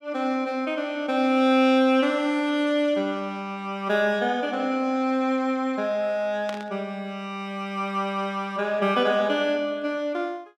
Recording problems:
burst of static; at 6.5 s; peak -7 dB vs average level

